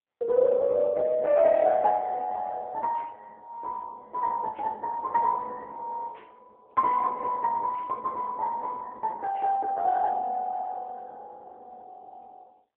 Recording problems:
telephone audio; 240 Hz to 2.1 kHz, AMR-NB

